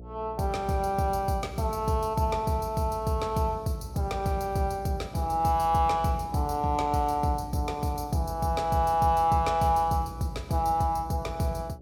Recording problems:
hum; 60 Hz, harmonics up to 720 Hz, SNR 19 dB

